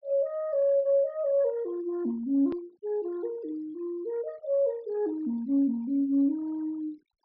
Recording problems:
treble cut off; nothing above 5.5 kHz
noise reduction artefacts; signal-to-artefact ratio 28 dB
hard cut with a click; at 2.5 s

